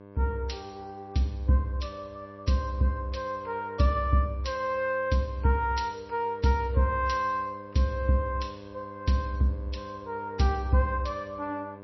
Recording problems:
codec artefacts; MP3, log-spectral distance 2 dB, nothing above 5.7 kHz
hum; 50 Hz, harmonics up to 1.7 kHz, SNR 17 dB

